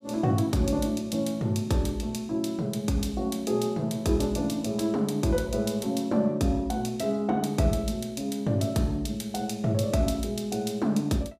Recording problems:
none

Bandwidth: 15.5 kHz